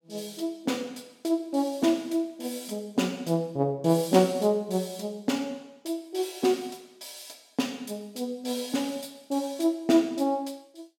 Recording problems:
none

